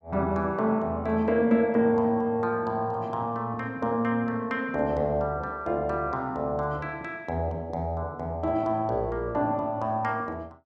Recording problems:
none

